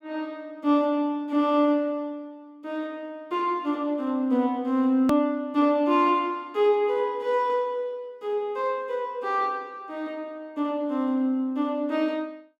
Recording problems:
hard cut with a click; at 5 s

